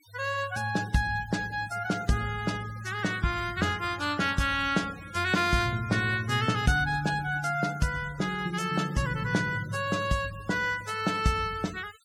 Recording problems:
noise reduction artefacts; signal-to-artefact ratio 18 dB

